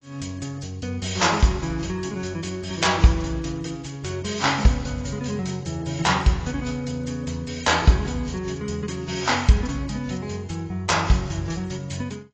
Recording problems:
lossy compression; AAC, log-spectral distance 6 dB, nothing above 7.3 kHz

